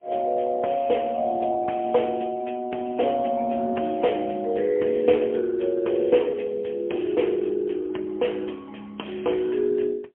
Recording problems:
phone line; 220 Hz to 3.2 kHz, AMR-NB, then MP3

